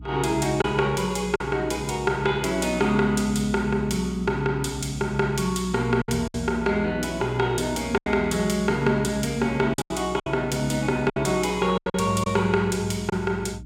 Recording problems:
hum; 60 Hz, harmonics up to 300 Hz, SNR 16 dB
lost packets; 5% of the sound replaced, filled with silence

